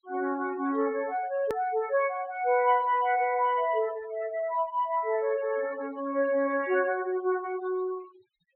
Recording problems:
low-pass filter; nothing above 4 kHz
noise reduction artefacts; signal-to-artefact ratio 21 dB
click at an edit; at 1.5 s

